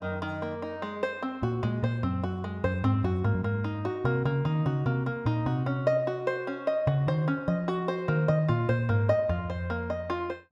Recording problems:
none

